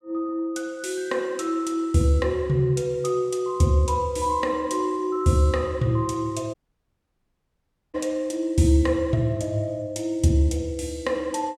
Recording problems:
audio cutting out; at 6.5 s for 1.5 s

